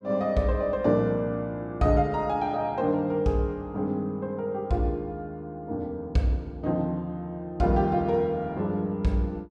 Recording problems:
none

